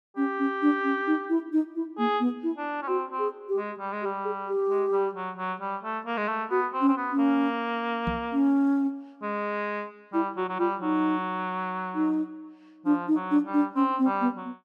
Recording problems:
microphone bump; at 8 s; peak 0 dB vs average level

